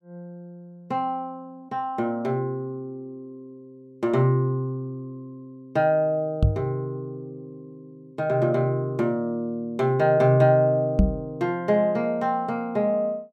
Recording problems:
microphone thump; at 6.5 s and at 11 s; peak +8 dB vs average level

